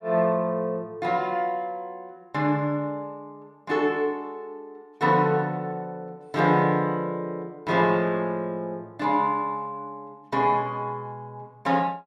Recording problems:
none

